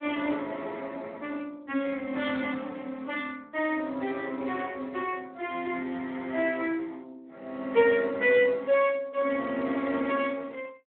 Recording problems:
telephone audio; 220 Hz to 3.5 kHz, Speex

